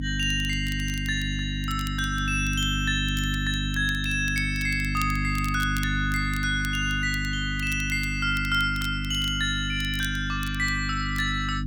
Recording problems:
hum; 50 Hz, harmonics up to 300 Hz, SNR 4 dB
crackling; vinyl, SNR 17 dB

